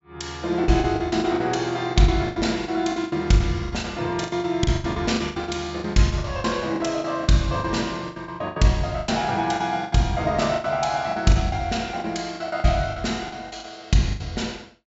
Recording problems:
low-pass filter; nothing above 8 kHz
lost packets; 17% of the sound replaced, filled with the last packet

